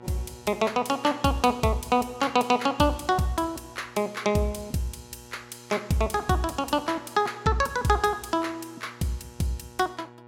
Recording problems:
hum; 60 Hz, harmonics up to 2.4 kHz, SNR 22 dB

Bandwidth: 16.5 kHz